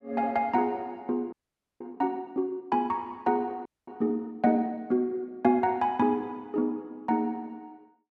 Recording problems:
audio freezing; at 1.5 s and at 3.5 s

